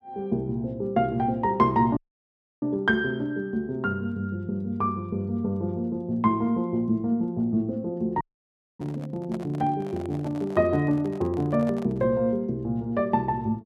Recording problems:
dropout; at 2 s for 0.5 s and at 8 s for 0.5 s
handling noise; from 9 to 12 s; peak -10 dB vs average level

